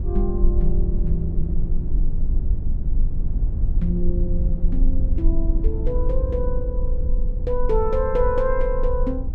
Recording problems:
low-frequency rumble; below 50 Hz, SNR -2 dB

